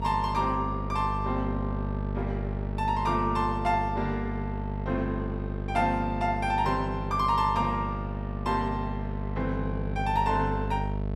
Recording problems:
hum; 50 Hz, harmonics up to 900 Hz, SNR 4 dB

